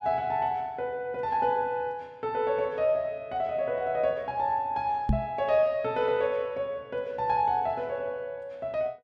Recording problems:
microphone bump; at 5 s; peak +6 dB vs average level

